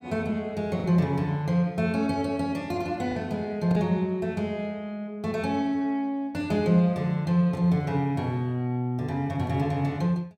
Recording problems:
lost packets; 1.2% of the sound replaced, filled with the last packet

